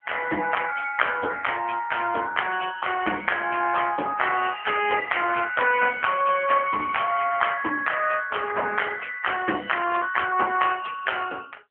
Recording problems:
phone line; 260 Hz to 3.3 kHz, AMR-NB

